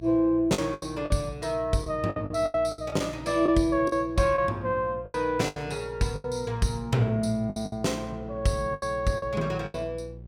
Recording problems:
hum; 60 Hz, harmonics up to 600 Hz, SNR 17 dB
lost packets; 11% of the sound replaced, filled with the last packet

